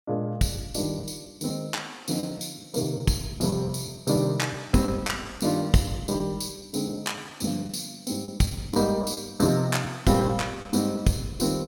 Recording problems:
packet loss; 8% of the sound replaced, filled with the last packet

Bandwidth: 17 kHz